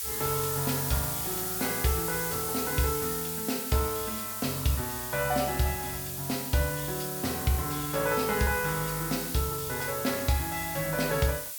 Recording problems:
hiss; slope +4 dB per octave, SNR 2 dB

